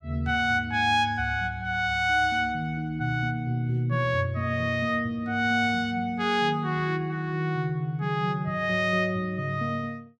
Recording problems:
none

